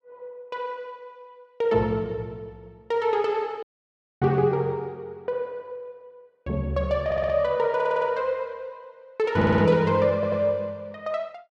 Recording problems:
audio cutting out; at 3.5 s for 0.5 s
stutter; 4 times, first at 7 s

